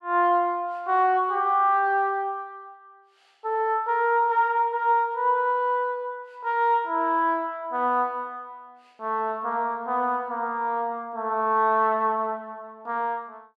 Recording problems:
none

